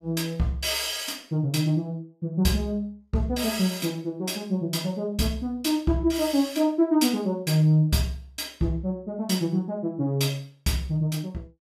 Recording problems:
none

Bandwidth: 15.5 kHz